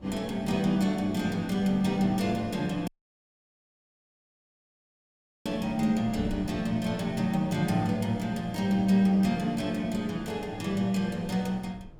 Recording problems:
wind on the microphone; below 200 Hz, SNR 20 dB
dropout; at 3 s for 2.5 s

